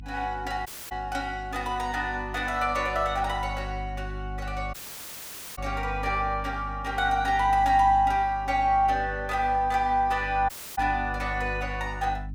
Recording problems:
hum; 50 Hz, harmonics up to 300 Hz, SNR 12 dB
audio cutting out; at 0.5 s, at 4.5 s for 1 s and at 10 s

